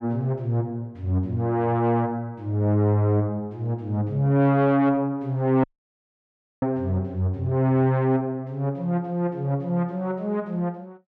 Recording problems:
distorted audio; soft clipping, signal-to-distortion ratio 11 dB
dropout; at 5.5 s for 1 s

